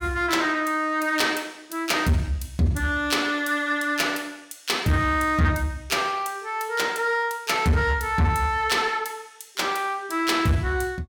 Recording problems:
distorted audio; soft clipping, signal-to-distortion ratio 11 dB

